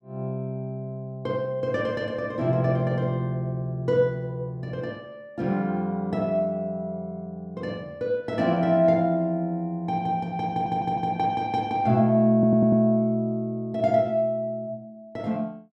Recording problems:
stutter; at 11 s and at 12 s

